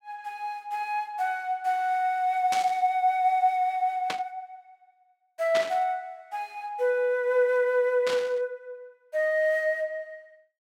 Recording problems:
static burst; 4 times, first at 2.5 s; peak -1 dB vs average level

